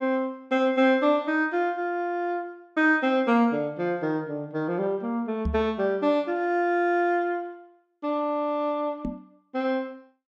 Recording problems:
microphone bump; at 5.5 s and at 9 s; peak 0 dB vs average level

